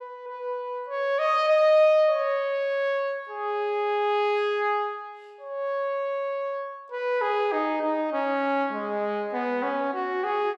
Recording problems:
none

